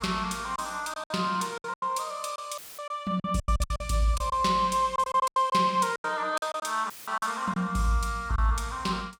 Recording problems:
lost packets; 11% of the sound replaced, filled with silence
dropout; at 2.5 s and at 7 s; filled with static

